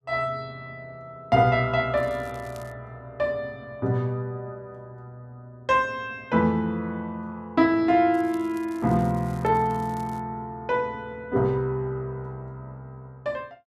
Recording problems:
crackling; at 2 s and from 8 to 10 s; loose cable, SNR 27 dB

